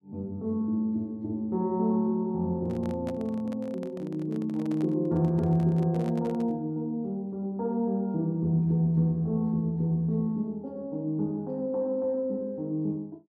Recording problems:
microphone handling noise; from 2.5 to 6.5 s; peak -8 dB vs average level

